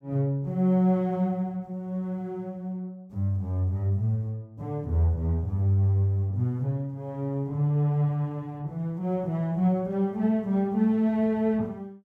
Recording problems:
none

